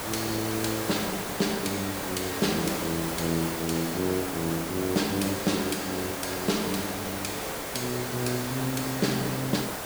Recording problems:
hiss; SNR 3 dB

